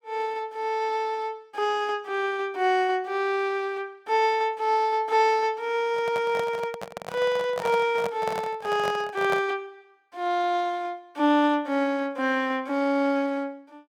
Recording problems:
handling noise; from 6 to 9.5 s; peak -1 dB vs average level

